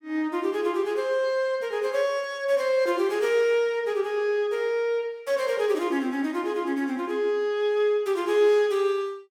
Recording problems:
none

